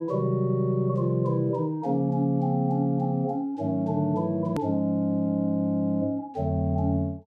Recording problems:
edit click; at 4.5 s

